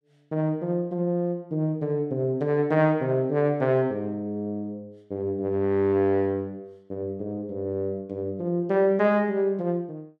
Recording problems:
none

